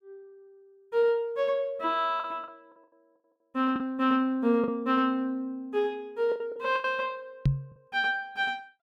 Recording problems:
packet loss; 6% of the sound replaced, filled with the last packet
microphone thump; at 7.5 s; peak +7 dB vs average level

